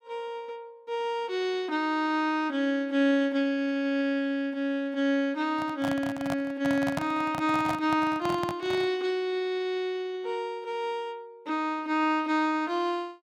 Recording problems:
handling noise; from 5.5 to 9 s; peak +1 dB vs average level

